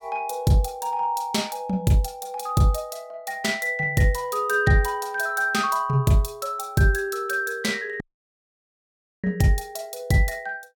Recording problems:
audio cutting out; at 8 s for 1 s

